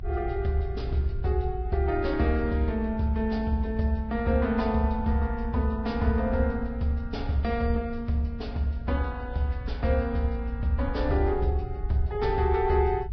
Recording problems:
codec artefacts; Vorbis, log-spectral distance 2 dB, nothing above 5 kHz
low-frequency rumble; below 64 Hz, strongest tone 56 Hz, SNR 7 dB

